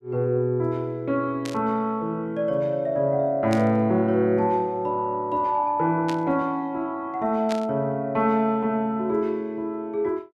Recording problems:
burst of static; 4 times, first at 1.5 s; peak -5 dB vs average level

